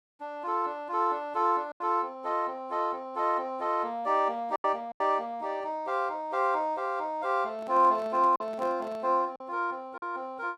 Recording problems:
packet loss; 3% of the sound replaced, filled with silence
handling noise; from 7.5 to 9 s; peak -10 dB vs average level

